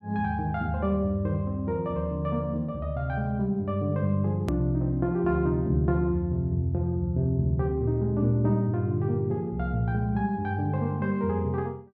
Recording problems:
hard cut with a click; at 4.5 s

